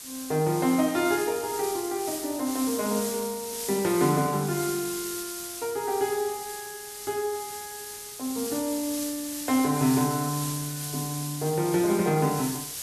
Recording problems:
background hiss; SNR 7 dB

